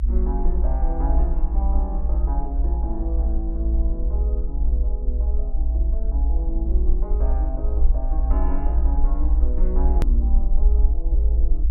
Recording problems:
rumble; below 56 Hz, SNR -11 dB
edit click; at 10 s

